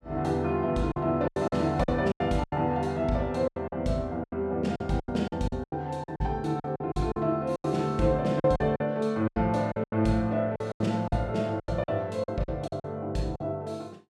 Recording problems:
packet loss; 14% of the sound replaced, filled with silence

